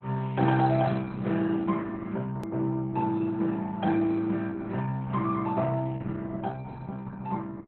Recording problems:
codec artefacts; Opus, log-spectral distance 3 dB, nothing above 13.1 kHz
hard cut with a click; at 2.5 s

